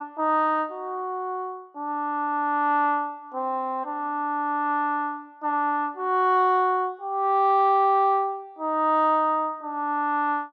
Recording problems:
none

